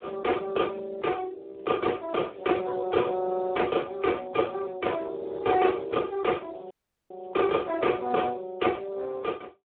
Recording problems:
phone line; 260 Hz to 2.3 kHz, Speex
crackling; from 1.5 to 3 s and from 5.5 to 7.5 s; loose cable, SNR 42 dB
dropout; at 6.5 s

